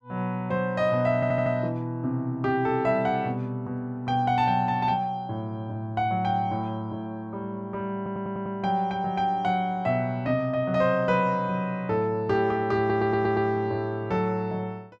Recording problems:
audio stuttering; at 1 s, at 8 s and at 13 s

